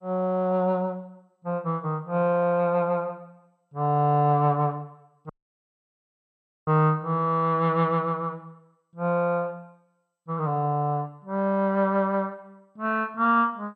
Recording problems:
codec artefacts; MP2, log-spectral distance 2 dB
dropout; at 5.5 s for 1.5 s

